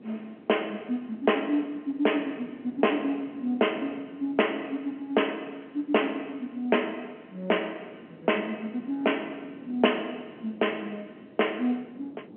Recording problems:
telephone audio; 220 Hz to 3.2 kHz, G.711
wind on the microphone; below 410 Hz, SNR 19 dB

